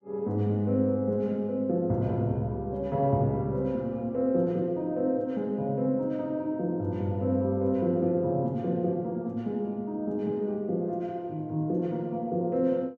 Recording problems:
none

